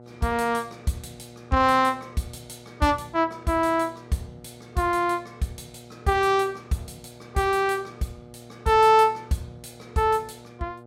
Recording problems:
hum; 60 Hz, harmonics up to 1.3 kHz, SNR 22 dB

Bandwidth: 16 kHz